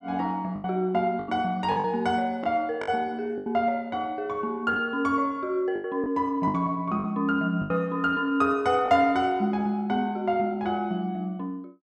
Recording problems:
packet loss; 6% of the sound replaced, filled with the last packet

